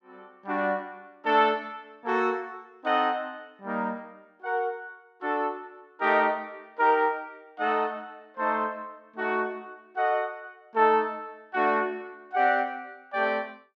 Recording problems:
none

